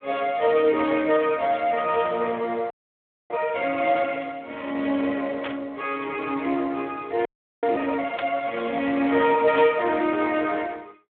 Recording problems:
telephone audio; 260 Hz to 3.5 kHz, Speex
audio freezing; at 2.5 s for 0.5 s and at 7.5 s
static burst; at 5.5 s, at 8 s and at 9.5 s; peak -4 dB vs average level

